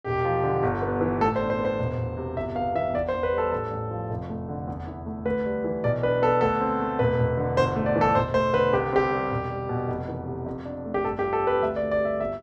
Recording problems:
none

